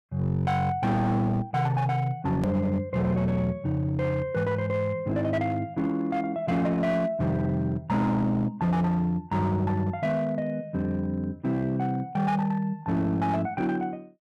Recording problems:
distortion; hard clipping, signal-to-distortion ratio 12 dB
edit click; at 2.5 s

